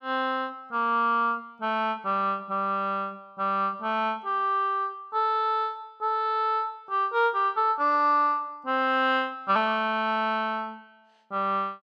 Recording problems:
none

